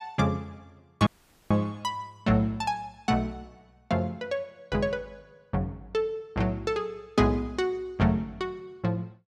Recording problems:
audio cutting out; at 1 s

